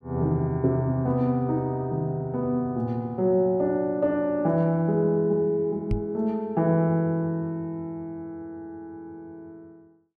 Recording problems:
microphone thump; at 6 s; peak +2 dB vs average level

